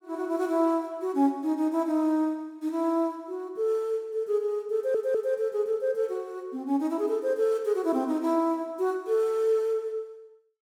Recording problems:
audio stuttering; at 5 s

